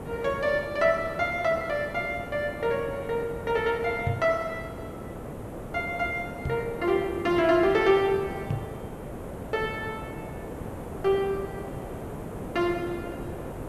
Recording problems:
background hiss; SNR 11 dB
microphone thump; at 4 s, at 6.5 s and at 8.5 s; peak +2 dB vs average level

